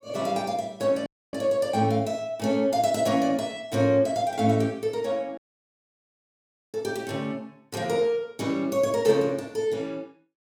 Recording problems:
audio cutting out; at 1 s and at 5.5 s for 1.5 s

